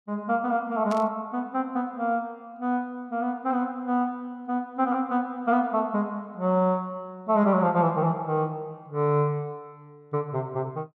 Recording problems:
burst of static; at 1 s; peak -10 dB vs average level

